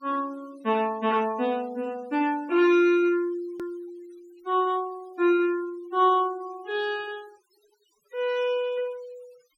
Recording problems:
noise reduction artefacts; signal-to-artefact ratio 26 dB
click at an edit; at 3.5 s

